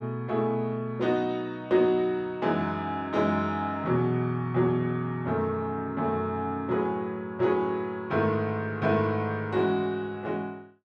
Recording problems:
none

